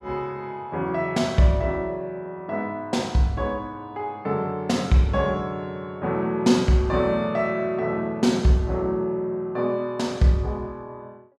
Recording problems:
none

